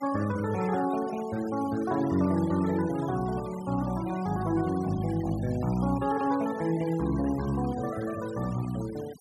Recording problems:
denoising artefacts; signal-to-artefact ratio 18 dB

